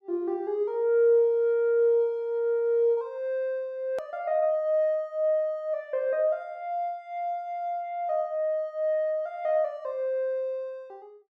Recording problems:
edit click; at 4 s

